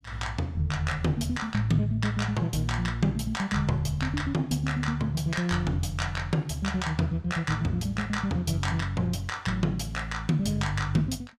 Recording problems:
none

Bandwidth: 15.5 kHz